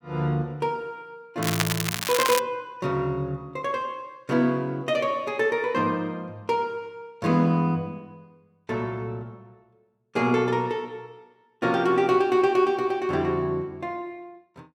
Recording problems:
crackling; at 1.5 s; loose cable, SNR 2 dB

